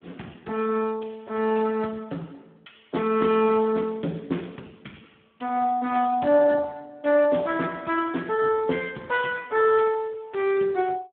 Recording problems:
telephone audio; 170 Hz to 3.4 kHz, Speex

